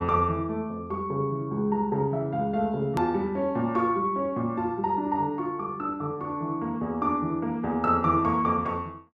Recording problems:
hard cut with a click; at 3 s

